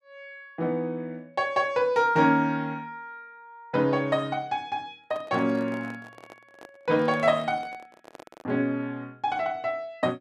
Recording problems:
handling noise; from 5 to 8.5 s; peak -10 dB vs average level

